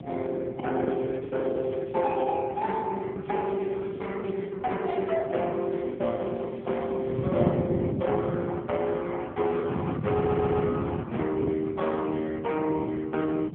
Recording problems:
phone line; 190 Hz to 3.5 kHz, AMR-NB
wind on the microphone; below 270 Hz, SNR 7 dB
lost packets; 9% of the sound replaced, filled with the last packet
crackle; from 1 to 2 s, from 3 to 4.5 s and from 5.5 to 7.5 s; loose cable, SNR 27 dB
audio stuttering; at 10 s

